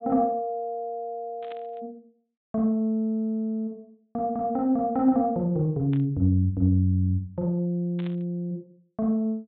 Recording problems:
treble missing; nothing above 4 kHz
burst of static; at 1.5 s, at 6 s and at 8 s; peak -15 dB vs average level

